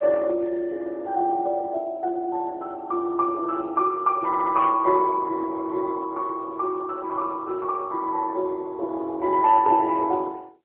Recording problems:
phone line; 300 Hz to 2.6 kHz, AMR-NB
stutter; at 4.5 s
static burst; at 4.5 s; peak -9 dB vs average level

